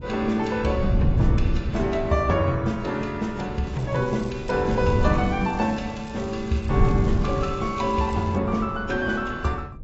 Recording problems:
codec artefacts; AAC, log-spectral distance 3 dB, nothing above 7.6 kHz
wind on the microphone; below 140 Hz, SNR 4 dB
crackling; from 3.5 to 8.5 s; loose cable, SNR 23 dB

